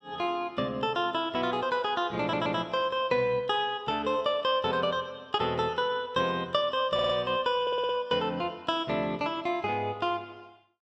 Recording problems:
stutter; at 2 s, at 7 s and at 7.5 s

